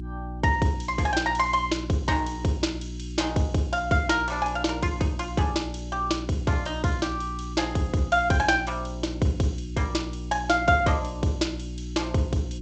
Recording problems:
lossy codec; G.722, log-spectral distance 3 dB, nothing above 7.8 kHz
electrical hum; 60 Hz, harmonics up to 360 Hz, SNR 10 dB

